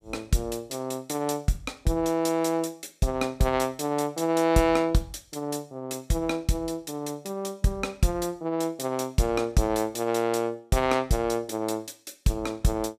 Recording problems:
none

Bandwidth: 15.5 kHz